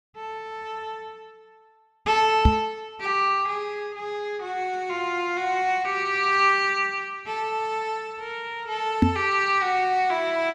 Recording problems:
microphone bump; at 2.5 s and at 9 s; peak +9 dB vs average level

